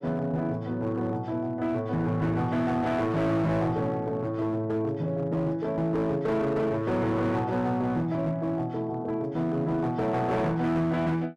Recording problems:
distorted audio; hard clipping, uneven, signal-to-distortion ratio 10 dB

